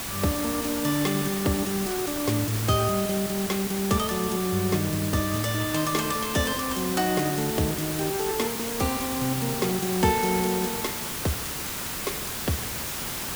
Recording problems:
hiss; slope -2 dB per octave, SNR 3 dB

